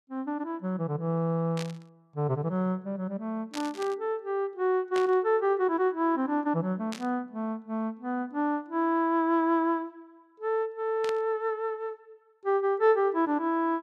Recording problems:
static burst; 5 times, first at 1.5 s; peak -5 dB vs average level

